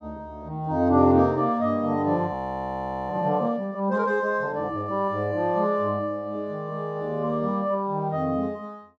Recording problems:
audio freezing; at 2.5 s for 1 s

